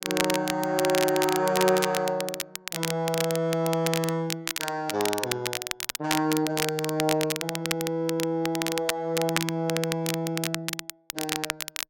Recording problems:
crackle; vinyl, SNR 4 dB

